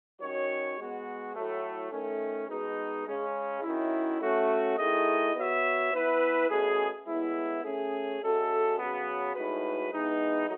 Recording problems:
telephone audio; 280 Hz to 3.4 kHz, G.711

